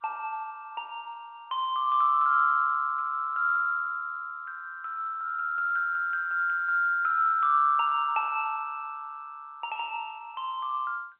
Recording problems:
phone line; 280 Hz to 3.4 kHz, G.711

